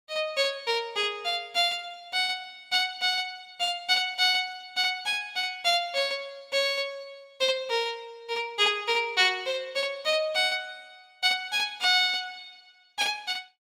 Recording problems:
none

